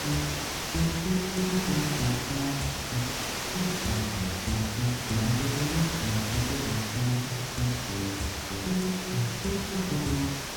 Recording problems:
hiss; slope -2 dB per octave, SNR 1 dB

